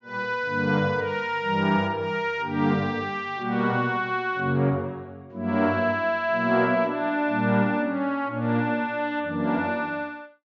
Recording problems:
low-pass filter; nothing above 7.2 kHz

